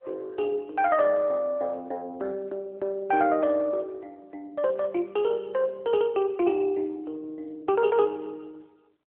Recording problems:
phone line; 260 Hz to 3.1 kHz, AMR-NB

